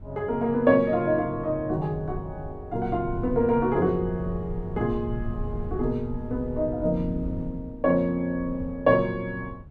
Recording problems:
wind on the microphone; below 130 Hz, SNR 12 dB

